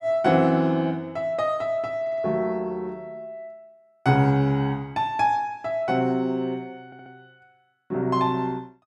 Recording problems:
stutter; at 2 s and at 7 s

